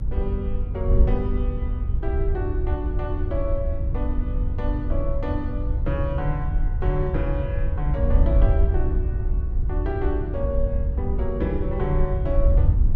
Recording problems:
hum; 50 Hz, harmonics up to 450 Hz, SNR 18 dB
wind noise; below 76 Hz, SNR -5 dB

